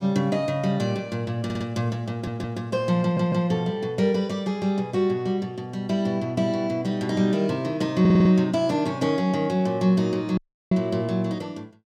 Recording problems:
audio stuttering; 4 times, first at 1.5 s
dropout; at 10 s

